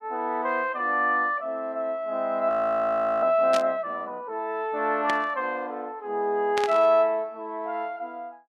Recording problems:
frozen audio; at 2.5 s for 0.5 s
burst of static; at 3.5 s, at 5 s and at 6.5 s; peak -1 dB vs average level

